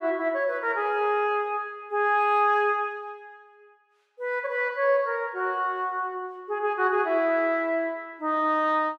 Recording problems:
none

